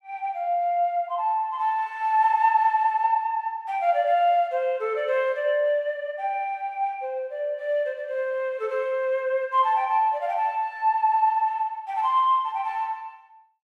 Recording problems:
none

